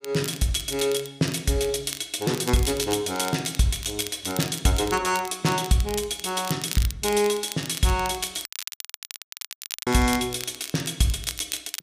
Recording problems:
crackle; vinyl, SNR 11 dB
dropout; at 8.5 s for 1.5 s

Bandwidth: 15 kHz